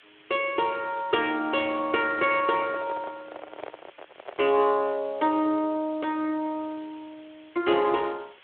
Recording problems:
phone line; 260 Hz to 3.7 kHz, Speex
hiss; SNR 27 dB
microphone handling noise; from 2.5 to 4.5 s; peak -7 dB vs average level

